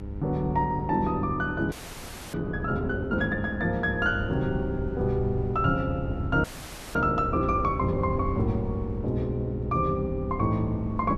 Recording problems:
hum; 50 Hz, harmonics up to 1 kHz, SNR 12 dB
low-frequency rumble; below 100 Hz, SNR 9 dB
wind noise; below 300 Hz, SNR 14 dB
audio freezing; at 1.5 s for 0.5 s and at 6.5 s for 0.5 s

